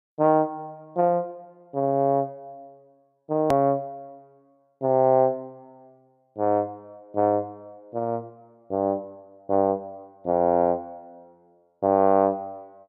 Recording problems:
hard cut with a click; at 3.5 s

